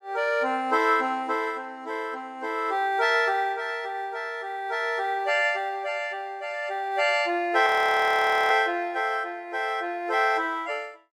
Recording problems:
audio freezing; at 7.5 s for 1 s

